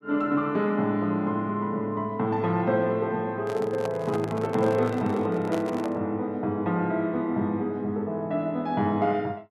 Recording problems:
handling noise; from 3.5 to 6 s; peak -2 dB vs average level

